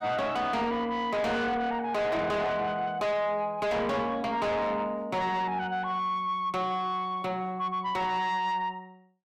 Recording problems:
distortion; soft clipping, signal-to-distortion ratio 7 dB

